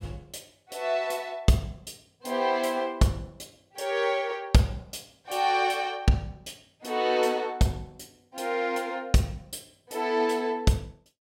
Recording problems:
none

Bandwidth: 16.5 kHz